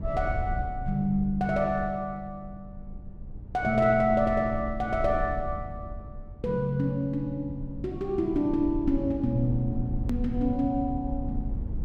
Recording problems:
rumble; below 90 Hz, SNR 10 dB
hard cut with a click; at 10 s

